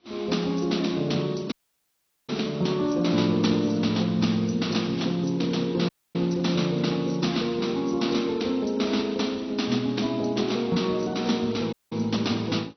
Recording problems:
treble cut off; nothing above 6 kHz
codec artefacts; AAC, log-spectral distance 3 dB
dropout; at 1.5 s for 1 s, at 6 s and at 12 s

